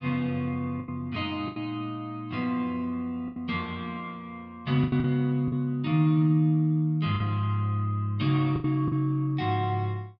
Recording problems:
lost packets; 6% of the sound replaced, filled with the last packet

